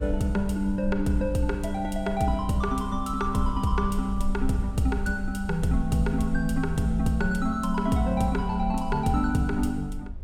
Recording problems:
rumble; below 52 Hz, strongest tone 20 Hz, SNR 10 dB

